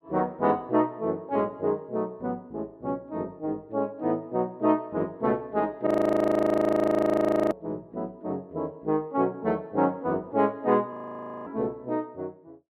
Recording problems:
audio freezing; at 6 s for 1.5 s and at 11 s for 0.5 s

